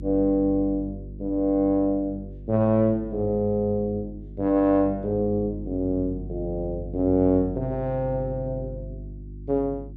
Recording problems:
hum; 50 Hz, harmonics up to 350 Hz, SNR 13 dB

